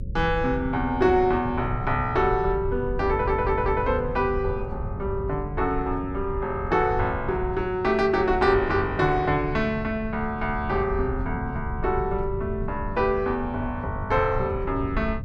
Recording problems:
hum; 50 Hz, harmonics up to 550 Hz, SNR 21 dB
low-frequency rumble; below 120 Hz, SNR 9 dB
audio stuttering; at 3 s

